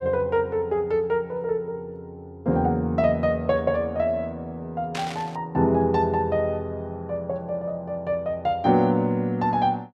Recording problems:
static burst; at 5 s; peak -4 dB vs average level

